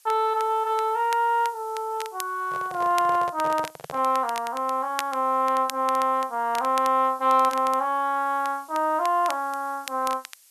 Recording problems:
hiss; slope +5 dB per octave, SNR 28 dB
crackling; vinyl, SNR 17 dB
microphone handling noise; from 2.5 to 4 s; peak -8 dB vs average level

